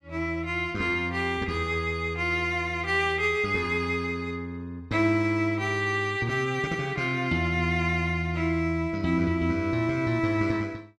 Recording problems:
none

